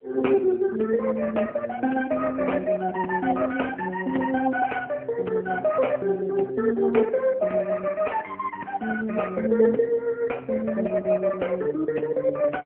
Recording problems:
telephone audio; 240 Hz to 2.4 kHz, AMR-NB

